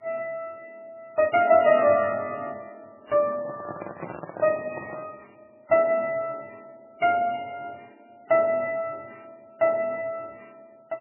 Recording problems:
codec artefacts; MP3, then MP3, log-spectral distance 3 dB, nothing above 2.8 kHz
microphone handling noise; from 3.5 to 5 s; peak -6 dB vs average level

